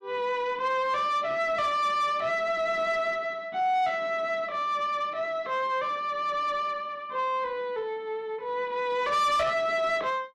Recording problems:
distorted audio; soft clipping, signal-to-distortion ratio 11 dB

